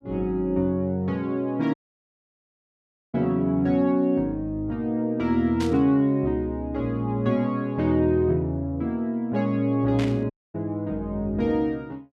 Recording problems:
audio cutting out; at 1.5 s for 1.5 s and at 10 s
static burst; at 5.5 s and at 10 s; peak -7 dB vs average level

